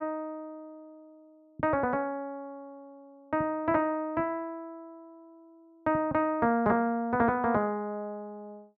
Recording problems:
none

